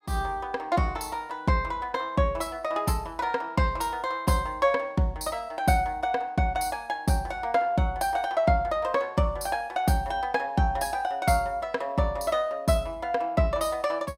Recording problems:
none

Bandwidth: 16 kHz